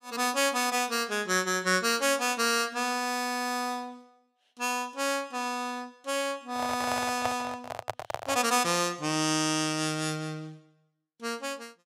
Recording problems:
handling noise; from 6.5 to 8.5 s; peak +1 dB vs average level

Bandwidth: 15.5 kHz